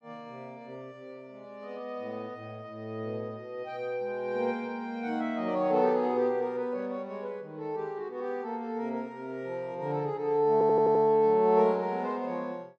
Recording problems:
audio stuttering; at 11 s

